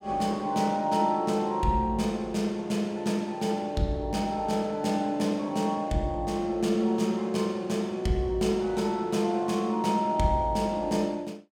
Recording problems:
none

